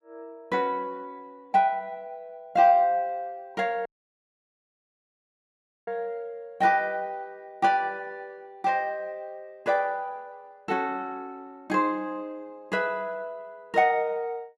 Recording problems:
dropout; at 4 s for 2 s

